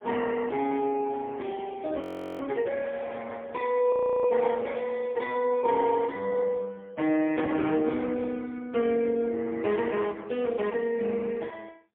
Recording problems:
telephone audio; 220 Hz to 3.4 kHz, AMR-NB, then MP3
audio freezing; at 2 s and at 4 s

